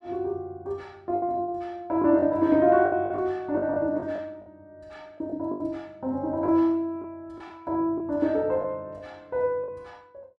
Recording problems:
lost packets; 7% of the sound replaced, filled with the last packet

